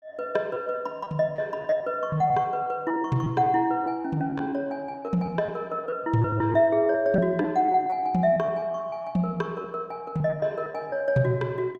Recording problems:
packet loss; 11% of the sound replaced, filled with repeated pitch periods

